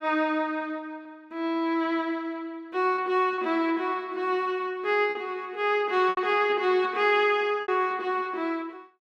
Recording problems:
lost packets; 3% of the sound replaced, filled with repeated pitch periods

